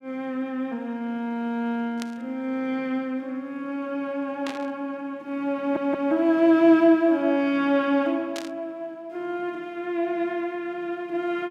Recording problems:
static burst; at 2 s, at 4.5 s and at 8.5 s; peak -6 dB vs average level
stutter; at 5.5 s

